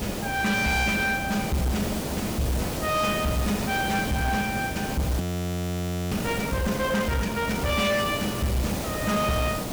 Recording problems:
distortion; hard clipping, signal-to-distortion ratio 11 dB
hum; 60 Hz, harmonics up to 960 Hz, SNR 20 dB
background hiss; SNR 5 dB
audio freezing; at 5 s for 1 s

